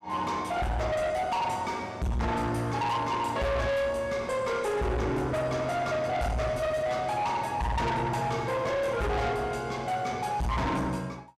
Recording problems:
distortion; soft clipping, signal-to-distortion ratio 7 dB

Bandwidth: 14.5 kHz